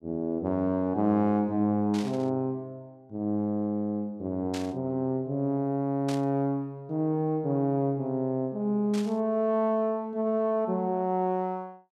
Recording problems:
static burst; 4 times, first at 2 s; peak -7 dB vs average level

